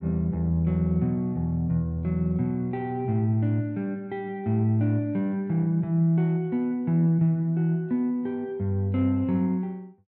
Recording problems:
none

